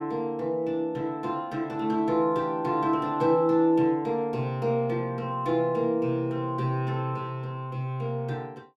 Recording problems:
none

